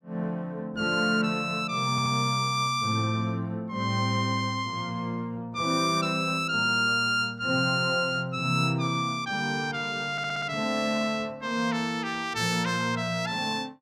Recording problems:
stutter; at 2 s and at 10 s

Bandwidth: 16.5 kHz